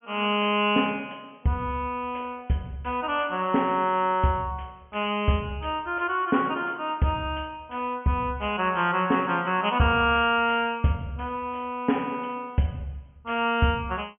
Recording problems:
treble missing; nothing above 3.2 kHz

